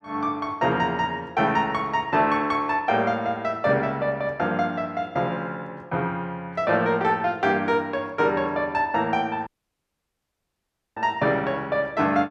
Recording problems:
dropout; at 9.5 s for 1.5 s

